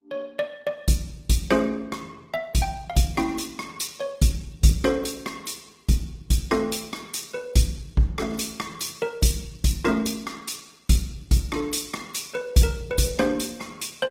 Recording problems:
codec artefacts; Opus, log-spectral distance 5 dB, nothing above 16 kHz

